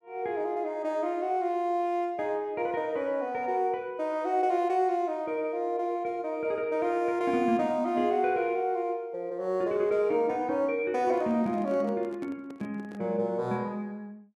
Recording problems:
handling noise; from 11 to 13 s; peak -10 dB vs average level

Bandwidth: 12.5 kHz